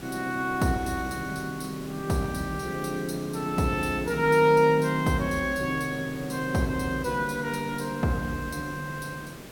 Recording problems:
hiss; slope -5 dB per octave, SNR 15 dB

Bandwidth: 17 kHz